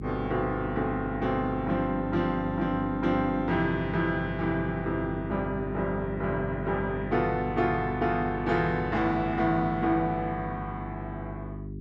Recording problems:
electrical hum; 50 Hz, harmonics up to 400 Hz, SNR 9 dB

